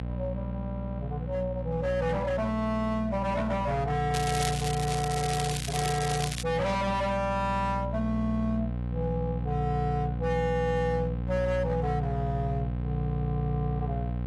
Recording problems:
codec artefacts; AAC, log-spectral distance 2 dB, nothing above 11.3 kHz
distorted audio; hard clipping, signal-to-distortion ratio 7 dB
hum; 60 Hz, harmonics up to 780 Hz, SNR 4 dB
crackle; from 4 to 6.5 s; loose cable, SNR 5 dB

